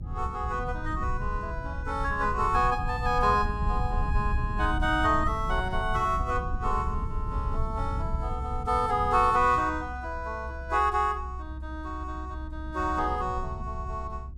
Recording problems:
low-frequency rumble; below 88 Hz, SNR 6 dB

